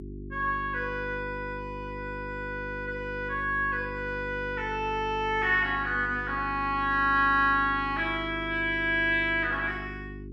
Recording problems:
hum; 50 Hz, harmonics up to 400 Hz, SNR 13 dB

